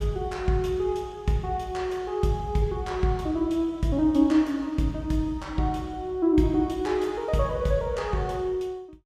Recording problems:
none

